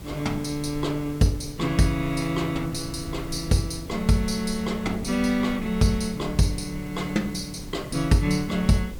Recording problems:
mains hum; 50 Hz, harmonics up to 1.6 kHz, SNR 23 dB
background hiss; slope -2 dB per octave, SNR 22 dB
rumble; below 98 Hz, SNR 16 dB
wind noise; below 260 Hz, SNR 21 dB

